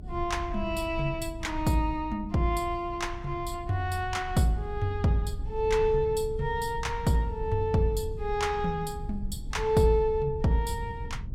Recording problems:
rumble; below 82 Hz, SNR 10 dB

